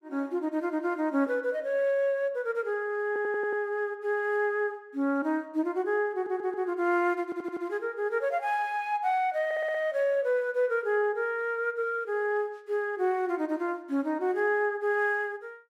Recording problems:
audio stuttering; 4 times, first at 3 s

